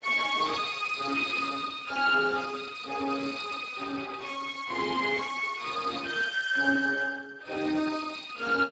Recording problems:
codec artefacts; Speex, log-spectral distance 6 dB, nothing above 7.6 kHz

